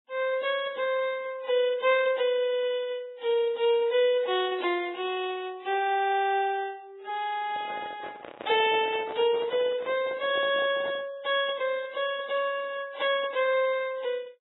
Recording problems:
lossy compression; AAC, then Vorbis, log-spectral distance 3 dB, nothing above 3.7 kHz
handling noise; from 7.5 to 11 s; peak -9 dB vs average level

